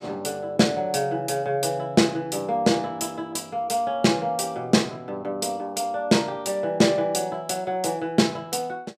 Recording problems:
none

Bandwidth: 15.5 kHz